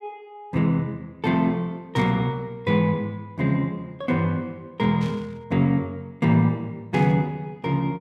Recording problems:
static burst; at 2 s, at 5 s and at 7 s; peak -13 dB vs average level

